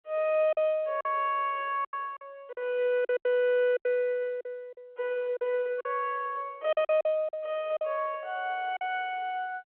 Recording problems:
telephone audio; 320 Hz to 3.7 kHz, G.711
lost packets; 9% of the sound replaced, filled with silence

